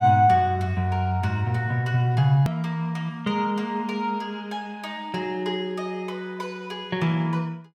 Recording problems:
hard cut with a click; at 2.5 s

